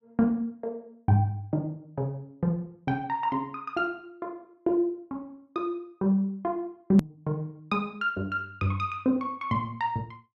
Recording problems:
edit click; at 7 s

